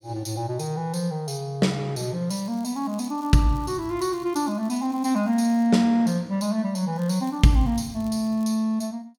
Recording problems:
crackle; from 2.5 to 5.5 s and from 7 to 8.5 s; loose cable, SNR 28 dB

